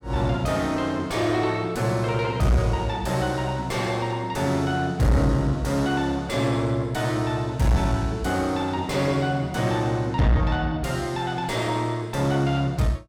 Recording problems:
distortion; soft clipping, signal-to-distortion ratio 7 dB

